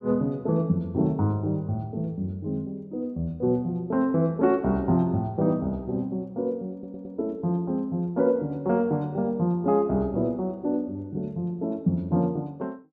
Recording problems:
audio stuttering; at 6.5 s

